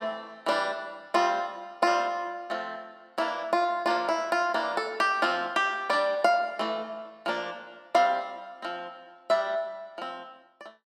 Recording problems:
none

